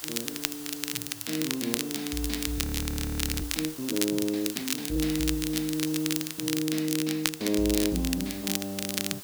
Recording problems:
background hiss; slope 0 dB per octave, SNR 10 dB
crackling; vinyl, SNR 2 dB
frozen audio; at 2.5 s for 1 s

